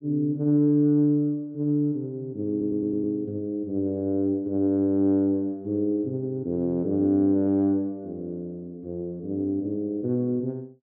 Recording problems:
stutter; at 2.5 s

